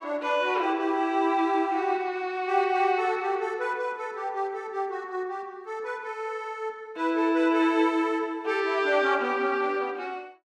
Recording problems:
none

